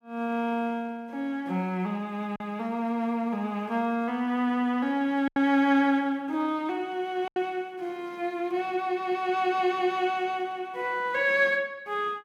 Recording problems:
lost packets; 1.6% of the sound replaced, filled with silence

